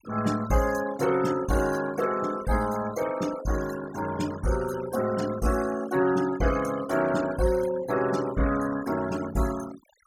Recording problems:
noise reduction artefacts; signal-to-artefact ratio 14 dB

